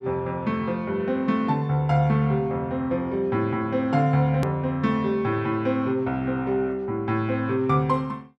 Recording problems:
edit click; at 4.5 s

